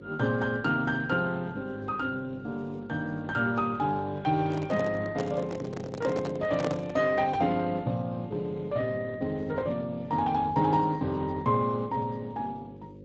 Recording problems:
lossy codec; Speex, log-spectral distance 3 dB
hum; 50 Hz, harmonics up to 550 Hz, SNR 17 dB
handling noise; from 4.5 to 7 s; peak +1 dB vs average level

